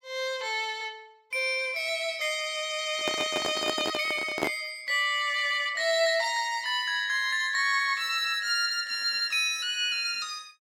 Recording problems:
handling noise; from 3 to 4.5 s; peak +2 dB vs average level

